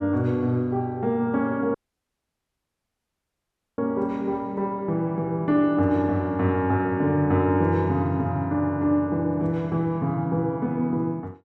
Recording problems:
dropout; at 2 s for 2 s

